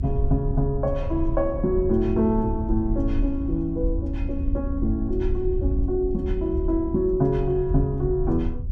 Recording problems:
rumble; below 74 Hz, SNR 5 dB

